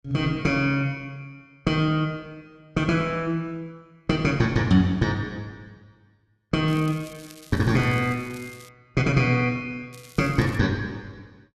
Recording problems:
crackling; from 6.5 to 8.5 s and at 10 s; loose cable, SNR 23 dB

